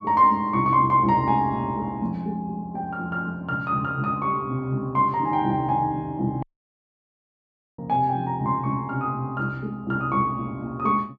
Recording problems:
audio cutting out; at 6.5 s for 1.5 s

